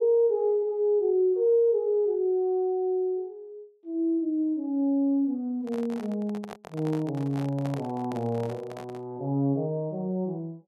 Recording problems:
handling noise; from 5.5 to 9 s; peak -9 dB vs average level

